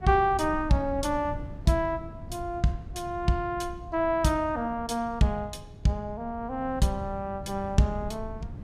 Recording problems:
wind noise; below 150 Hz, SNR 13 dB

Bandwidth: 15 kHz